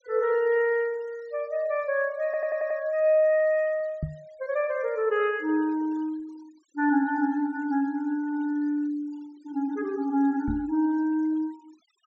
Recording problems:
low-pass filter; nothing above 8 kHz
denoising artefacts; signal-to-artefact ratio 28 dB
stutter; at 2.5 s
knock on the microphone; at 4 s and at 10 s; peak 0 dB vs average level

